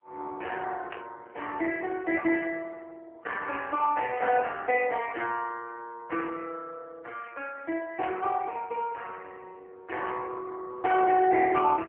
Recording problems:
telephone audio; 260 Hz to 3.1 kHz, AMR-NB
burst of static; 4 times, first at 1 s; peak -8 dB vs average level

